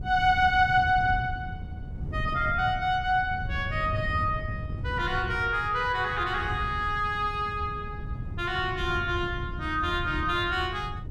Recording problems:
wind noise; below 130 Hz, SNR 9 dB

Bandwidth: 14 kHz